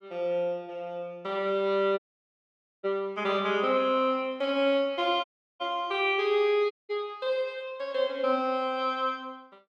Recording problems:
audio cutting out; at 2 s for 1 s, at 5 s and at 6.5 s

